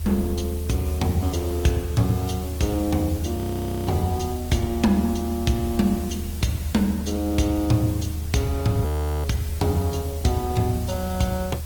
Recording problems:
codec artefacts; Opus, log-spectral distance 4 dB, nothing above 18.9 kHz
background hiss; slope 0 dB per octave, SNR 16 dB
rumble; below 80 Hz, strongest tone 78 Hz, SNR 6 dB
wind noise; below 840 Hz, SNR 24 dB
frozen audio; at 3.5 s for 0.5 s and at 9 s

